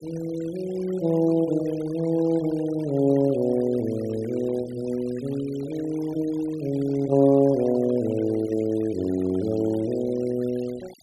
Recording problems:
denoising artefacts; signal-to-artefact ratio 22 dB

